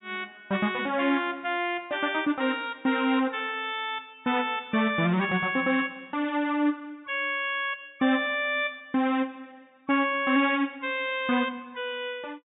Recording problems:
treble missing; nothing above 4 kHz

